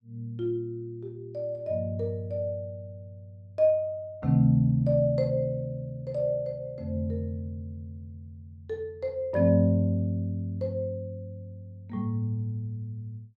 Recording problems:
none

